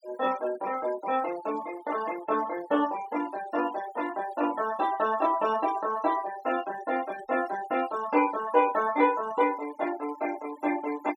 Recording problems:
denoising artefacts; signal-to-artefact ratio 18 dB

